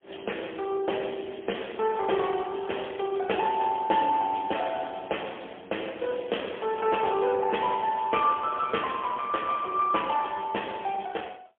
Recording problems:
telephone audio; 280 Hz to 3.3 kHz, AMR-NB, then MP3

